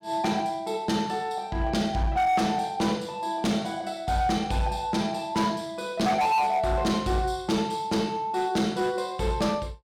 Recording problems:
distorted audio; hard clipping, signal-to-distortion ratio 11 dB

